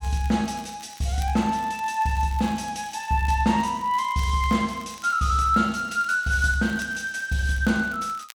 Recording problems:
crackling; vinyl, SNR 24 dB

